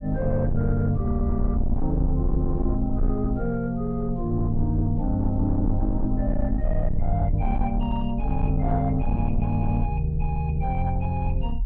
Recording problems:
distortion; soft clipping, signal-to-distortion ratio 11 dB
rumble; below 54 Hz, SNR 4 dB

